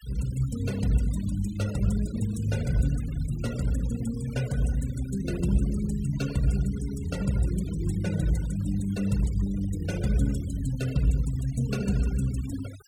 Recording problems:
noise reduction artefacts; signal-to-artefact ratio 18 dB

